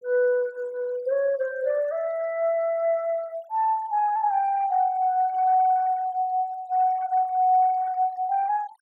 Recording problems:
noise reduction artefacts; signal-to-artefact ratio 27 dB

